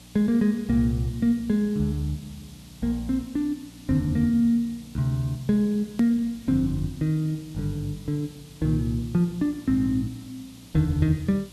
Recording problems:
electrical hum; 60 Hz, harmonics up to 300 Hz, SNR 25 dB
hiss; SNR 24 dB
edit click; at 6 s

